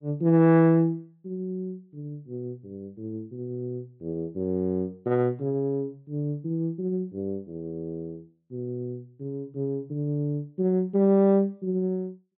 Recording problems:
treble missing; nothing above 4.2 kHz

